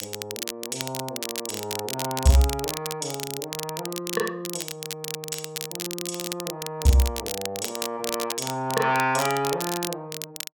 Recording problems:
crackle; vinyl, SNR 5 dB

